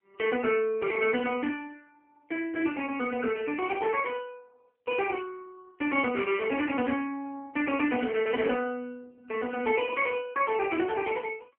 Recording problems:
telephone audio; 220 Hz to 3.1 kHz, AMR-NB

